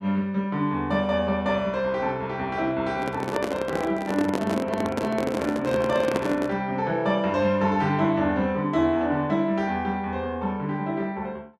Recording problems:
microphone handling noise; from 3 to 6.5 s; peak +3 dB vs average level

